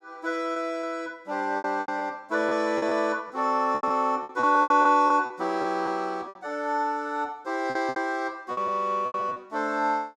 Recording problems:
packet loss; 11% of the sound replaced, filled with repeated pitch periods

